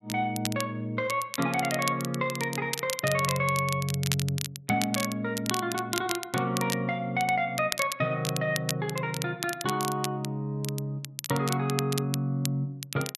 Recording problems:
crackling; vinyl, SNR 7 dB

